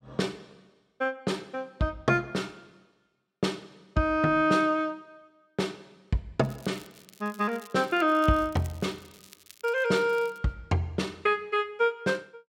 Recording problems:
crackling; from 6.5 to 8 s and from 8 to 10 s; loose cable, SNR 23 dB

